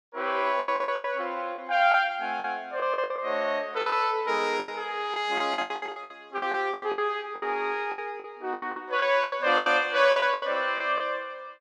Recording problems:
packet loss; 16% of the sound replaced, filled with the last packet

